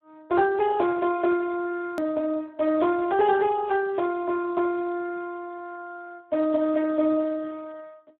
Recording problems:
phone line; 130 Hz to 2.1 kHz, Speex
click at an edit; at 2 s

